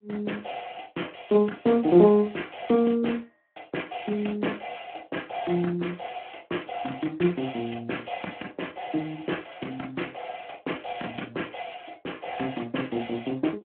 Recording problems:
phone line; 240 Hz to 3.5 kHz, Speex

